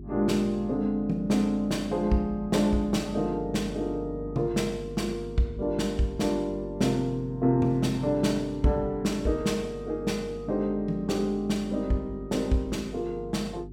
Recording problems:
hum; 50 Hz, harmonics up to 400 Hz, SNR 14 dB

